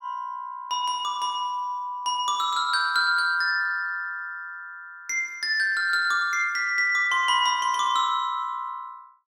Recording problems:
none

